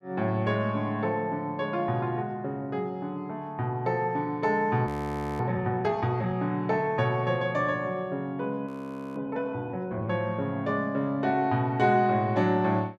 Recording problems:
frozen audio; at 5 s for 0.5 s and at 8.5 s

